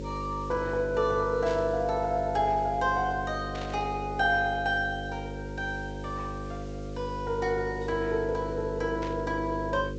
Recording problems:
treble missing; nothing above 8 kHz
electrical hum; 50 Hz, harmonics up to 550 Hz, SNR 8 dB
hiss; slope +2 dB per octave, SNR 27 dB
burst of static; at 1.5 s, at 3.5 s and at 9 s; peak -9 dB vs average level

